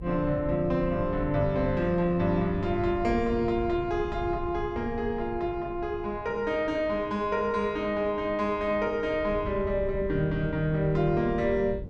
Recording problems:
hum; 50 Hz, harmonics up to 550 Hz, SNR 22 dB
wind noise; below 130 Hz, SNR 12 dB

